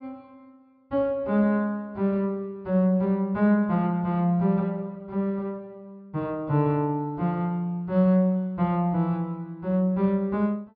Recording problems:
treble missing; nothing above 5.2 kHz

